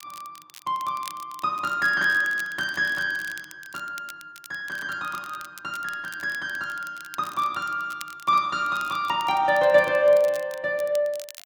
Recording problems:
crackling; vinyl, SNR 20 dB

